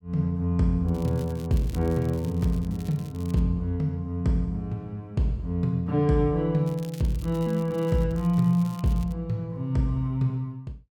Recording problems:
crackling; from 1 to 3.5 s and from 6.5 to 9 s; loose cable, SNR 24 dB

